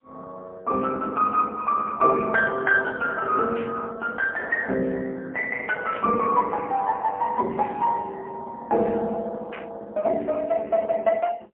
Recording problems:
phone line; 240 Hz to 2.3 kHz, AMR-NB, then MP3
burst of static; at 3.5 s, at 6 s and at 9.5 s; peak -9 dB vs average level

